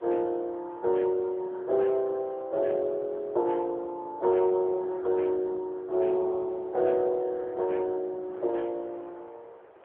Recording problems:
phone line; 320 Hz to 3.6 kHz, AMR-NB
wind on the microphone; below 990 Hz, SNR 25 dB

